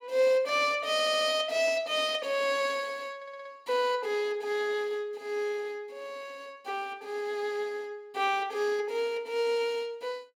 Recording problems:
audio stuttering; at 1 s and at 3 s

